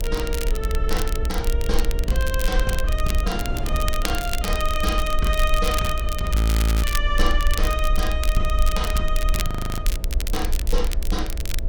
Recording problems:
electrical hum; 60 Hz, harmonics up to 660 Hz, SNR 11 dB
low-frequency rumble; below 54 Hz, SNR -1 dB
wind on the microphone; below 430 Hz, SNR 13 dB
crackle; vinyl, SNR 6 dB
audio freezing; at 6.5 s and at 9.5 s

